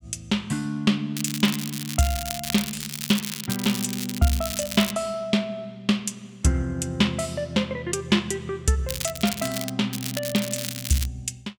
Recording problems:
crackle; from 1 to 5 s, at 9 s and from 10 to 11 s; loose cable, SNR 6 dB

